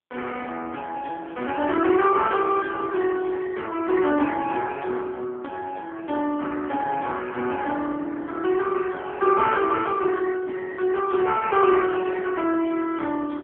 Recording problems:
phone line; 260 Hz to 2.6 kHz, AMR-NB

